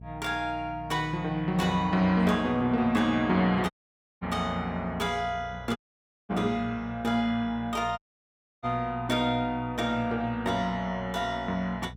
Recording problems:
hum; 60 Hz, harmonics up to 480 Hz, SNR 16 dB
dropout; at 3.5 s for 0.5 s, at 6 s for 0.5 s and at 8 s for 0.5 s

